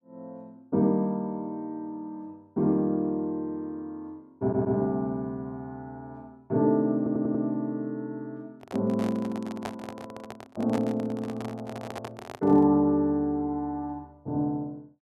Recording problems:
audio stuttering; at 4.5 s and at 7 s
handling noise; from 8.5 to 13 s; peak -3 dB vs average level

